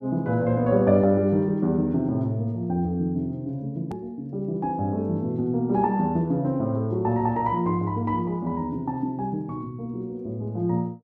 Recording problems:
click at an edit; at 4 s

